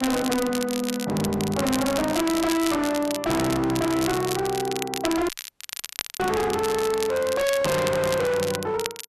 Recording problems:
distorted audio; hard clipping, signal-to-distortion ratio 7 dB
crackle; vinyl, SNR 8 dB
dropout; at 5.5 s for 1 s

